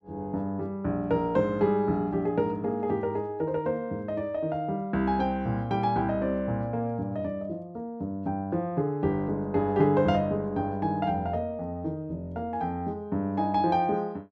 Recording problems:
none

